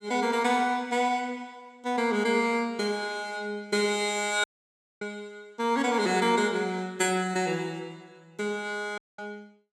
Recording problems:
audio cutting out; at 4.5 s for 0.5 s and at 9 s

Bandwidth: 17 kHz